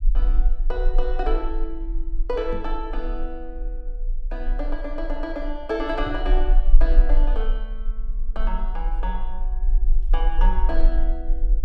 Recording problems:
low-frequency rumble; below 36 Hz, strongest tone 18 Hz, SNR -5 dB
microphone bump; at 2.5 s and at 6 s; peak +1 dB vs average level

